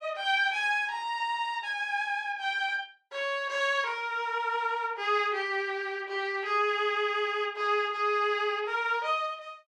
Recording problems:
none

